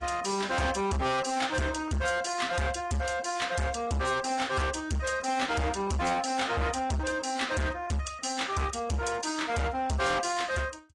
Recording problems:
lossy codec; AAC, log-spectral distance 4 dB
distorted audio; hard clipping, signal-to-distortion ratio 6 dB

